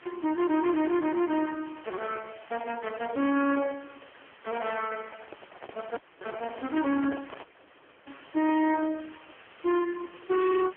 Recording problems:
phone line; 240 Hz to 3.3 kHz, AMR-NB
distortion; hard clipping, uneven, signal-to-distortion ratio 8 dB
hiss; SNR 22 dB
handling noise; from 5 to 7.5 s; peak -7 dB vs average level
dropout; at 6 s and at 7.5 s for 0.5 s

